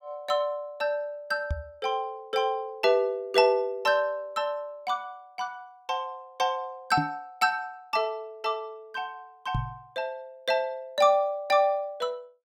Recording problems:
knock on the microphone; at 1.5 s, at 7 s and at 9.5 s; peak +2 dB vs average level

